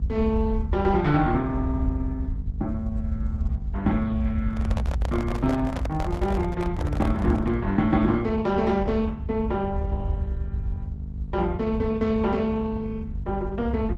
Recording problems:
lossy codec; Opus, log-spectral distance 2 dB
hum; 50 Hz, harmonics up to 500 Hz, SNR 13 dB
rumble; below 80 Hz, SNR 5 dB
handling noise; from 4.5 to 7.5 s; peak -2 dB vs average level

